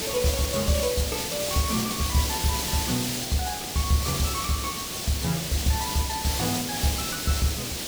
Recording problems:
hiss; SNR 1 dB

